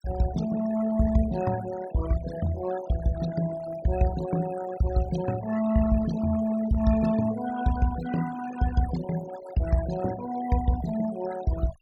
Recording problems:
denoising artefacts; signal-to-artefact ratio 12 dB

